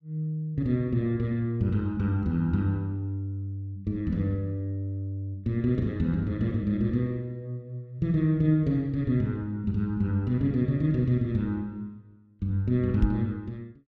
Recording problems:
microphone thump; at 13 s; peak +6 dB vs average level

